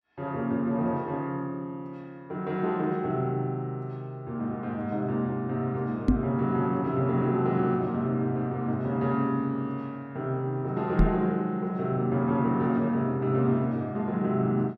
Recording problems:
microphone bump; at 6 s and at 11 s; peak +9 dB vs average level

